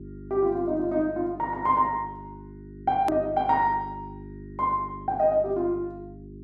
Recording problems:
electrical hum; 50 Hz, harmonics up to 400 Hz, SNR 16 dB
hard cut with a click; at 3 s

